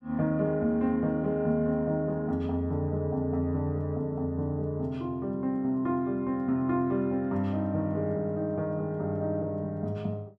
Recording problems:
none

